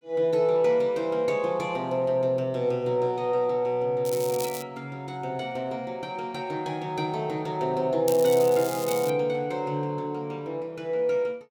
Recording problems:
crackling; at 4 s and from 8 to 9 s; loose cable, SNR 11 dB

